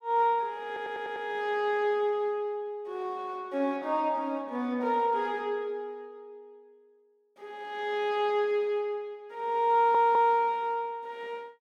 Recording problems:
audio stuttering; at 0.5 s and at 9.5 s

